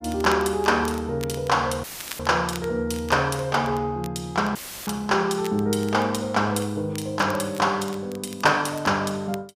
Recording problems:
crackling; vinyl, SNR 20 dB
audio cutting out; at 2 s and at 4.5 s; filled with static

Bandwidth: 15 kHz